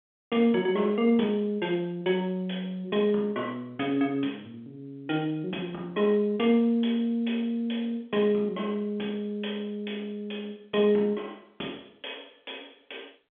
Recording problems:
telephone audio; 260 Hz to 3.4 kHz, G.711

